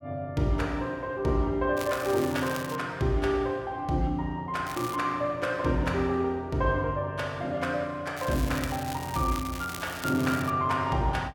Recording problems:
crackle; at 2 s, at 4.5 s and from 8 to 11 s; loose cable, SNR 12 dB

